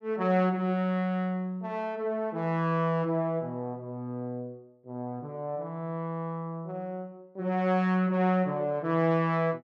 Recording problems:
none

